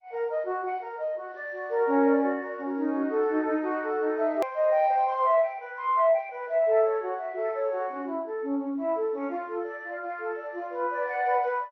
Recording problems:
codec artefacts; MP2, log-spectral distance 2 dB
edit click; at 4.5 s

